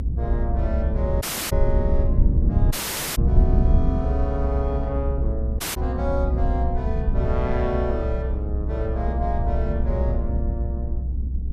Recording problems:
low-frequency rumble; below 80 Hz, SNR -5 dB
audio cutting out; at 1 s, at 2.5 s and at 5.5 s

